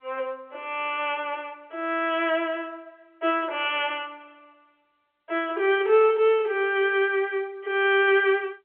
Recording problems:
phone line; 340 Hz to 3.5 kHz, G.711

